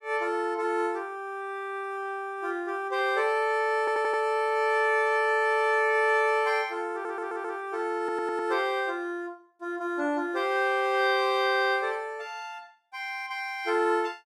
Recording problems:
audio stuttering; at 4 s, at 7 s and at 8 s

